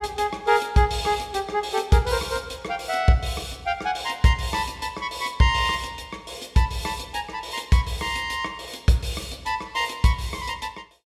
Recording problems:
none

